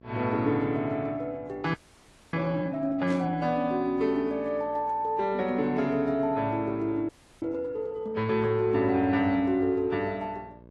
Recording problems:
lossy compression; AAC, log-spectral distance 2 dB
hum; 60 Hz, harmonics up to 1.1 kHz, SNR 24 dB
frozen audio; at 1.5 s for 0.5 s and at 7 s
burst of static; at 3 s; peak -16 dB vs average level

